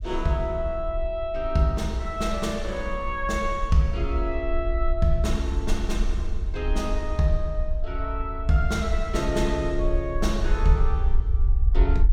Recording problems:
rumble; below 52 Hz, SNR 3 dB

